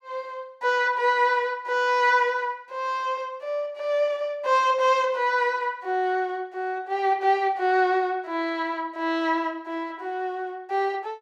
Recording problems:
none

